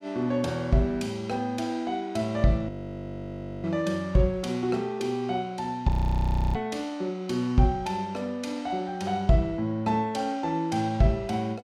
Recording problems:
audio freezing; at 2.5 s for 1 s and at 6 s for 0.5 s

